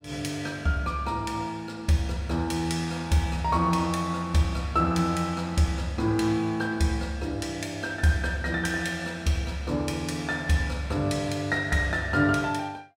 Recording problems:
none

